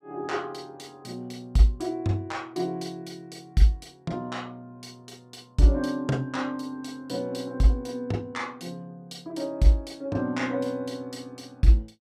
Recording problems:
none

